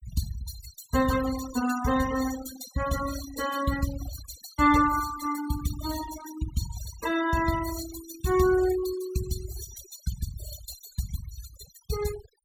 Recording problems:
noise reduction artefacts; signal-to-artefact ratio 9 dB

